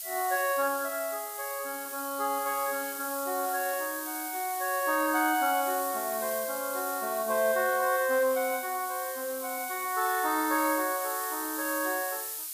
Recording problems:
background hiss; slope +4 dB per octave, SNR 6 dB

